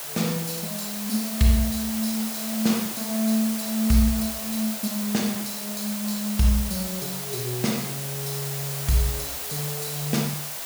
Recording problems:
hiss; SNR 4 dB

